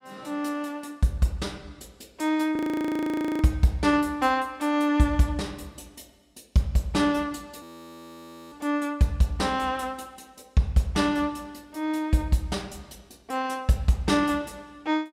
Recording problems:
audio freezing; at 2.5 s for 1 s and at 7.5 s for 1 s

